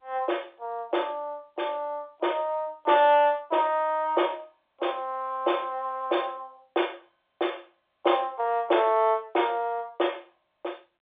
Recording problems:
telephone audio; 320 Hz to 3.6 kHz, G.711

